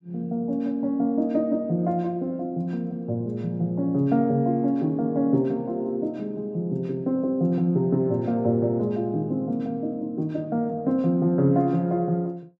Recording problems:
none

